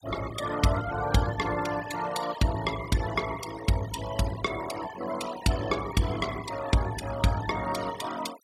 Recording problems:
denoising artefacts; signal-to-artefact ratio 13 dB

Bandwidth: 16 kHz